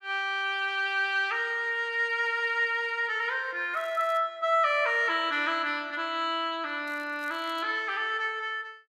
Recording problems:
crackling; at 3.5 s and at 7 s; loose cable, SNR 29 dB

